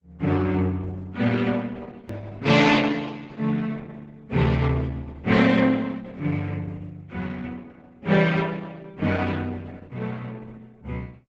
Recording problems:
codec artefacts; Opus, log-spectral distance 3 dB
click at an edit; at 2 s

